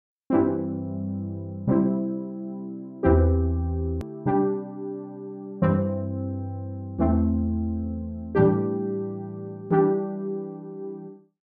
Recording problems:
click at an edit; at 4 s

